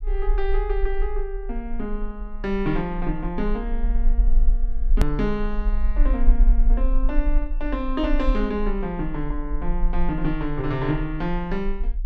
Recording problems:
low-frequency rumble; below 40 Hz, strongest tone 24 Hz, SNR -1 dB
edit click; at 5 s

